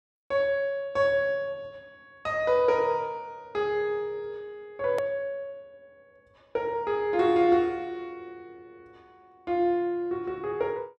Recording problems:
click at an edit; at 5 s

